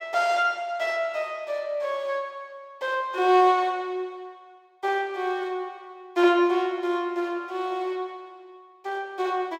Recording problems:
none

